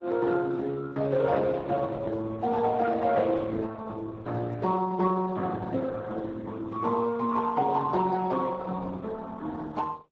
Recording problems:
lossy compression; Speex, then Opus, log-spectral distance 3 dB

